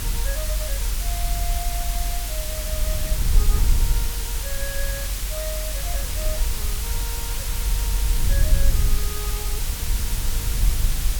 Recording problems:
hiss; slope 0 dB per octave, SNR -9 dB
low-frequency rumble; below 52 Hz, SNR -12 dB

